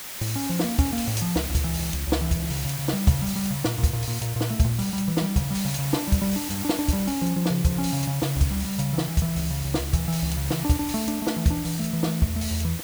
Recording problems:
background hiss; slope 0 dB per octave, SNR 7 dB

